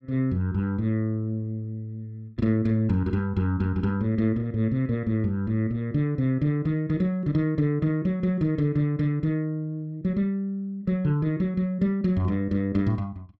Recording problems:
none

